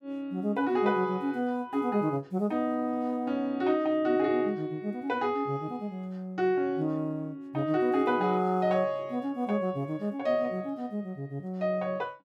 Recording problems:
none

